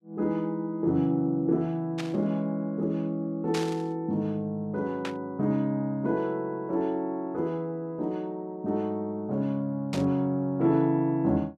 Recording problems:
static burst; 4 times, first at 2 s; peak -2 dB vs average level

